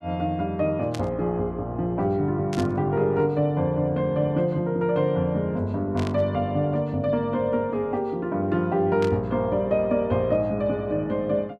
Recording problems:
burst of static; 4 times, first at 1 s; peak -8 dB vs average level

